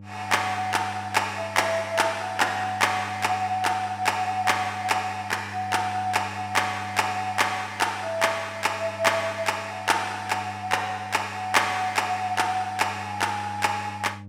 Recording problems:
mains hum; 50 Hz, harmonics up to 600 Hz, SNR 17 dB

